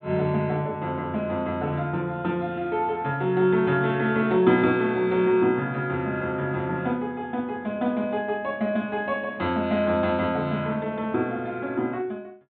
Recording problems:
treble cut off; nothing above 4 kHz

